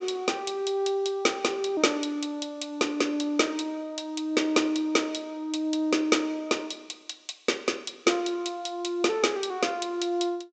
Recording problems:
treble missing; nothing above 8 kHz

